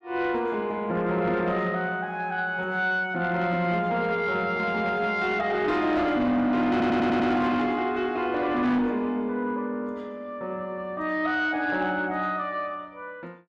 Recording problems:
distortion; soft clipping, signal-to-distortion ratio 12 dB
stutter; at 6.5 s

